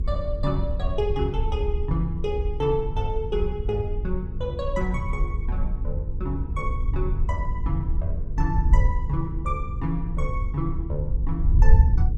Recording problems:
hum; 50 Hz, harmonics up to 500 Hz, SNR 11 dB
wind on the microphone; below 68 Hz, SNR -2 dB

